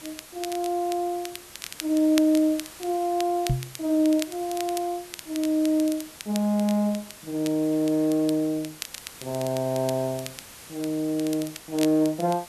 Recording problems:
hiss; slope -1 dB per octave, SNR 18 dB
crackling; vinyl, SNR 15 dB
microphone bump; at 3.5 s; peak +4 dB vs average level

